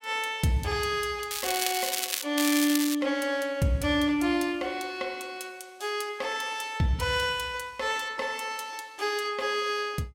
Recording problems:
crackling; at 1.5 s and at 2.5 s; loose cable, SNR 1 dB

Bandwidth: 16 kHz